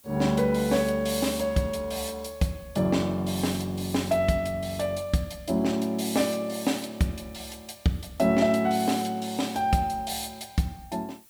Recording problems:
background hiss; slope 0 dB per octave, SNR 27 dB

